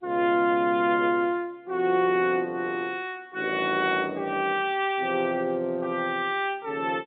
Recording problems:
phone line; 170 Hz to 3.7 kHz, G.711

